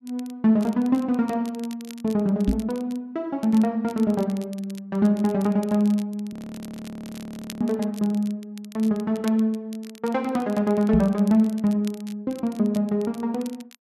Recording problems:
crackling; vinyl, SNR 23 dB
knock on the microphone; at 2.5 s and at 11 s; peak +4 dB vs average level
audio freezing; at 6.5 s for 1.5 s

